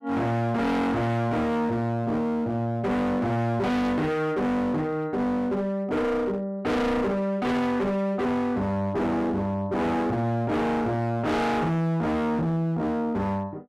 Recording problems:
distortion; hard clipping, signal-to-distortion ratio 6 dB

